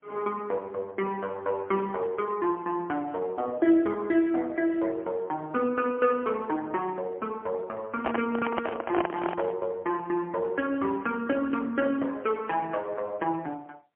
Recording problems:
phone line; 260 Hz to 3.3 kHz, AMR-NB, then MP3
microphone handling noise; from 8 to 9.5 s; peak +4 dB vs average level

